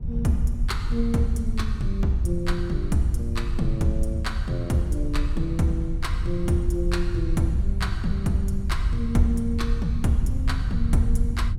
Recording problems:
low-frequency rumble; below 74 Hz, SNR 1 dB

